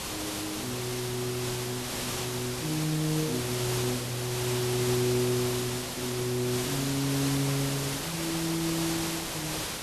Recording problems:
hiss; slope -2 dB per octave, SNR 1 dB

